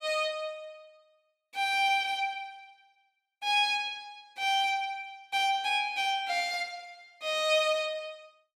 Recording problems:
none

